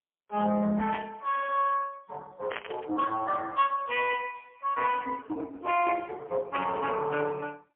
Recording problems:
telephone audio; 220 Hz to 3.3 kHz, AMR-NB, then MP3
static burst; at 1 s, at 2.5 s and at 6.5 s; peak 0 dB vs average level

